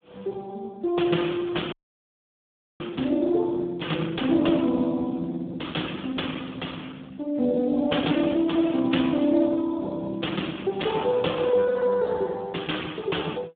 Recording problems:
telephone audio; 190 Hz to 3.8 kHz, Speex
frozen audio; at 1.5 s for 1 s

